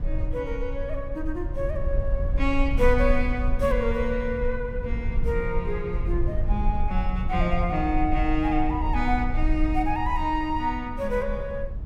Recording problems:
low-frequency rumble; below 60 Hz, SNR 2 dB

